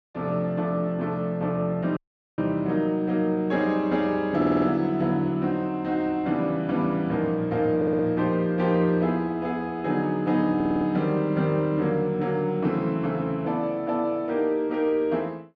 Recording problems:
dropout; at 2 s
stutter; at 4.5 s, at 8 s and at 11 s

